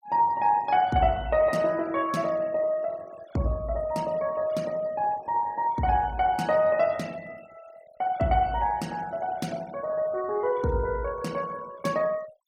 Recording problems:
noise reduction artefacts; signal-to-artefact ratio 23 dB

